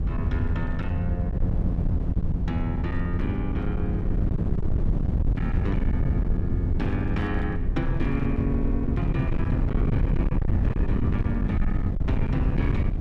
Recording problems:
distortion; hard clipping, signal-to-distortion ratio 8 dB
wind on the microphone; below 120 Hz, SNR -3 dB

